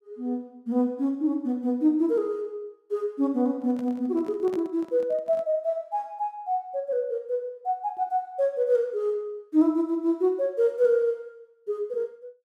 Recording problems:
microphone handling noise; from 3.5 to 5.5 s; peak -10 dB vs average level

